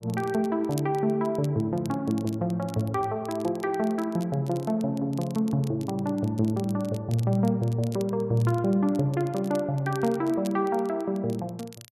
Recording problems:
crackle; vinyl, SNR 22 dB

